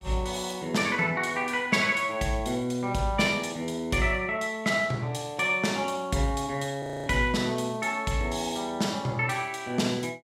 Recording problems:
audio freezing; at 7 s

